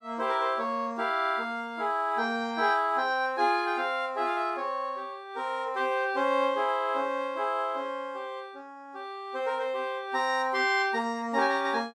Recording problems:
none

